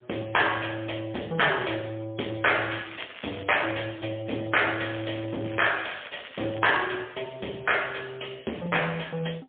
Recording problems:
phone line; 190 Hz to 3.5 kHz, AMR-NB, then MP3
distorted audio; hard clipping, signal-to-distortion ratio 13 dB
crackle; at 2.5 s and from 5 to 6.5 s; loose cable, SNR 17 dB

